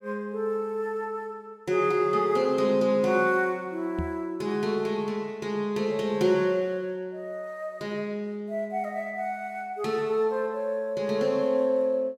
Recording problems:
microphone bump; at 4 s; peak -2 dB vs average level

